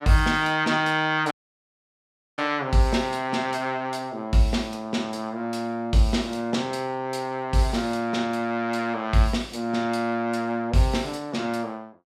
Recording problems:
audio cutting out; at 1.5 s for 1 s

